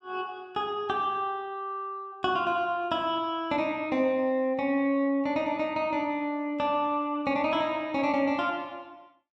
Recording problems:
none

